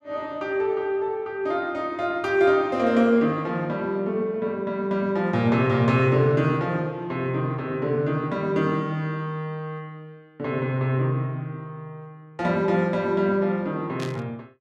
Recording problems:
burst of static; at 14 s; peak -8 dB vs average level

